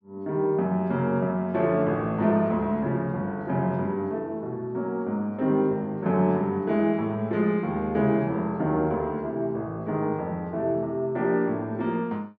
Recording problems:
none

